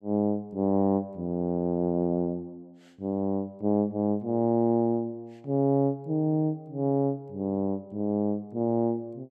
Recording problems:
none

